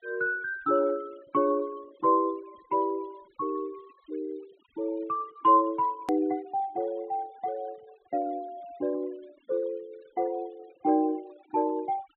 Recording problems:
treble missing; nothing above 4 kHz
noise reduction artefacts; signal-to-artefact ratio 26 dB
click at an edit; at 6 s

